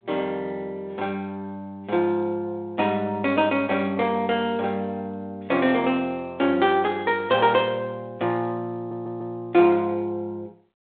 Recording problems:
phone line; 280 Hz to 3.7 kHz, G.726
stutter; at 9 s

